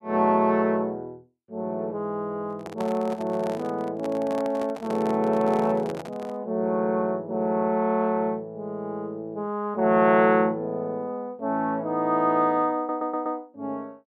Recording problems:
microphone handling noise; from 2.5 to 6.5 s; peak -7 dB vs average level
stutter; at 13 s

